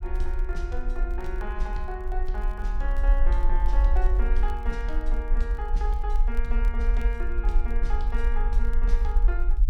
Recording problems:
rumble; below 44 Hz, strongest tone 22 Hz, SNR -8 dB
crackle; vinyl, SNR 25 dB

